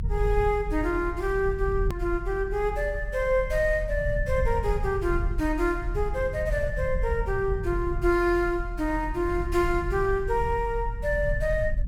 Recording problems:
rumble; below 70 Hz, strongest tone 42 Hz, SNR 6 dB
edit click; at 2 s

